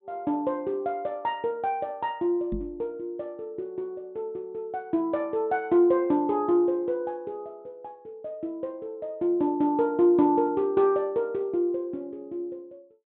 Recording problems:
treble missing; nothing above 4 kHz
knock on the microphone; at 2.5 s; peak -2 dB vs average level

